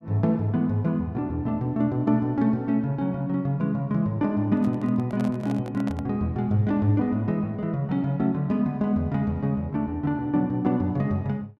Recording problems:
microphone handling noise; from 4.5 to 6 s; peak -8 dB vs average level

